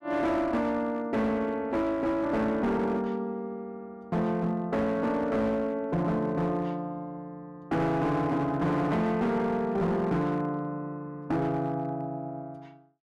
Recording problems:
distortion; hard clipping, uneven, signal-to-distortion ratio 10 dB

